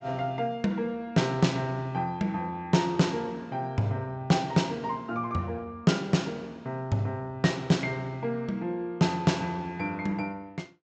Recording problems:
treble cut off; nothing above 8 kHz

